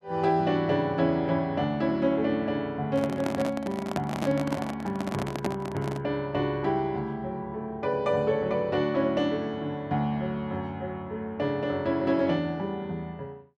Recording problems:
microphone handling noise; from 3 to 6 s; peak +1 dB vs average level

